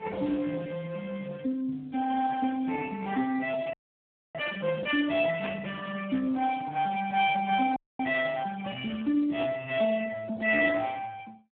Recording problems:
telephone audio; 190 Hz to 2.9 kHz, Speex
frozen audio; at 3.5 s for 0.5 s and at 8 s
burst of static; at 5.5 s and at 9.5 s; peak -5 dB vs average level

